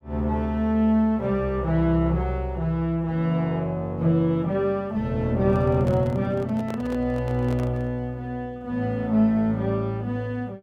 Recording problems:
microphone handling noise; from 5.5 to 8 s; peak -8 dB vs average level

